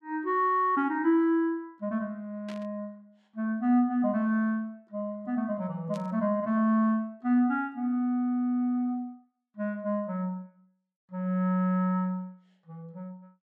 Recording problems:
static burst; at 2.5 s and at 6 s; peak -13 dB vs average level

